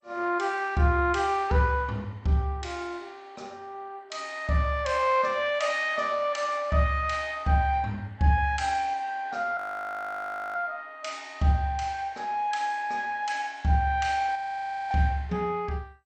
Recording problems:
codec artefacts; MP2, log-spectral distance 2 dB
audio freezing; at 9.5 s for 1 s and at 14 s for 0.5 s

